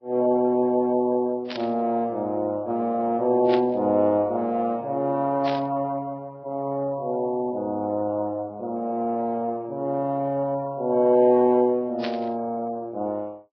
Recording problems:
lossy codec; Vorbis, then AAC, log-spectral distance 2 dB
static burst; 4 times, first at 1.5 s; peak -5 dB vs average level

